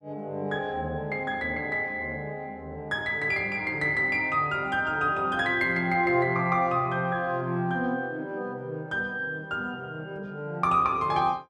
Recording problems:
none

